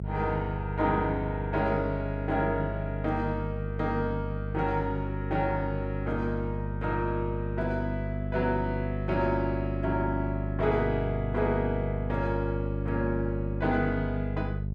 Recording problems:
hum; 50 Hz, harmonics up to 450 Hz, SNR 3 dB

